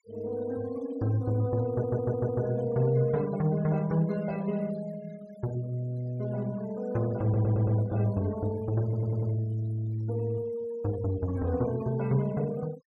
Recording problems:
noise reduction artefacts; signal-to-artefact ratio 21 dB
stutter; at 1.5 s, at 7 s and at 9 s

